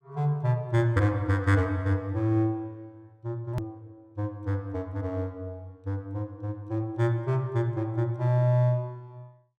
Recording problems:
edit click; at 3.5 s

